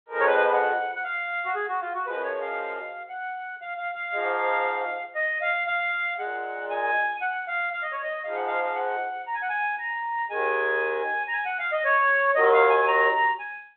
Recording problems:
telephone audio; 320 Hz to 3.7 kHz, G.726

